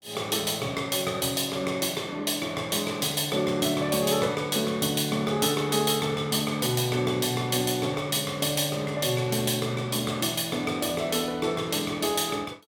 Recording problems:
none

